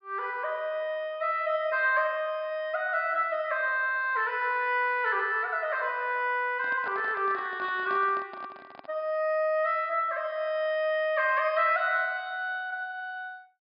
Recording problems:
low-pass filter; nothing above 5 kHz
handling noise; from 6.5 to 9 s; peak -11 dB vs average level

